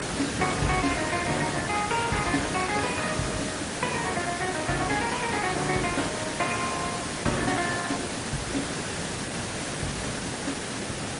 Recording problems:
lossy codec; Opus, then MP3, log-spectral distance 14 dB, nothing above 10.4 kHz
background hiss; slope -4 dB per octave, SNR 2 dB

